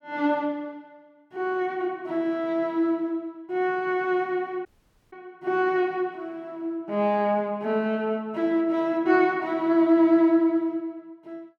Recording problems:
audio cutting out; at 4.5 s

